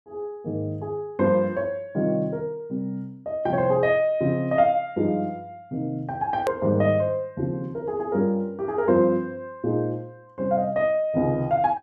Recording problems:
click at an edit; at 6.5 s

